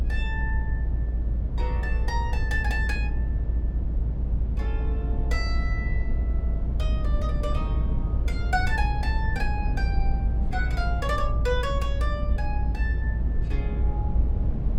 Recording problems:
rumble; below 70 Hz, strongest tone 56 Hz, SNR -6 dB

